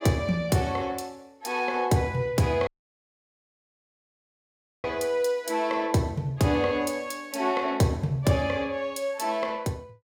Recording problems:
audio cutting out; at 2.5 s for 2 s

